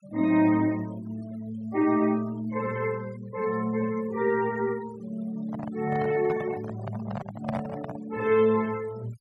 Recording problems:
denoising artefacts; signal-to-artefact ratio 21 dB
handling noise; from 5.5 to 8 s; peak -2 dB vs average level

